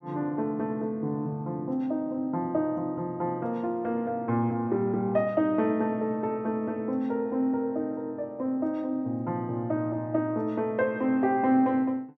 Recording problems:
none

